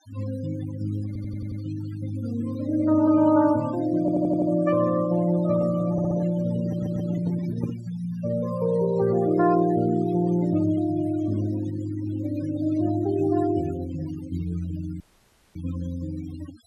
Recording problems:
noise reduction artefacts; signal-to-artefact ratio 16 dB
stutter; 4 times, first at 1 s
microphone handling noise; from 5.5 to 8 s; peak -2 dB vs average level
dropout; at 15 s for 0.5 s

